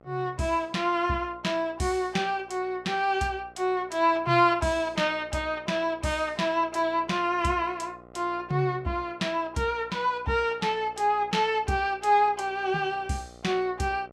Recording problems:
hum; 60 Hz, harmonics up to 2.1 kHz, SNR 25 dB

